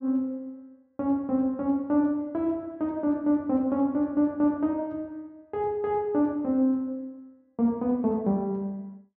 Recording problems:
low-pass filter; nothing above 8 kHz

